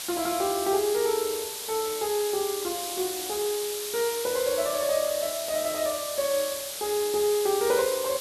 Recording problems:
hiss; slope +2 dB per octave, SNR 5 dB

